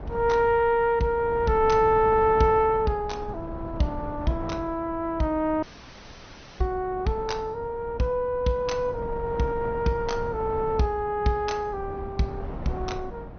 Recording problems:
treble missing; nothing above 6.1 kHz
lossy codec; Opus, log-spectral distance 2 dB
wind on the microphone; below 330 Hz, SNR 13 dB
audio cutting out; at 5.5 s for 1 s

